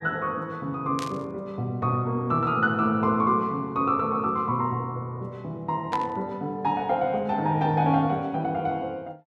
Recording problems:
burst of static; at 1 s and at 6 s; peak -5 dB vs average level

